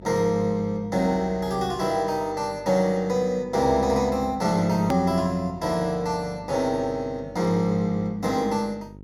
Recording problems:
hum; 50 Hz, harmonics up to 550 Hz, SNR 20 dB
click at an edit; at 5 s

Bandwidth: 16.5 kHz